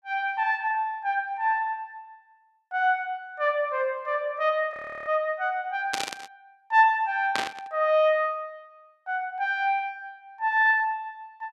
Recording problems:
audio freezing; at 4.5 s
static burst; at 6 s and at 7.5 s; peak +1 dB vs average level

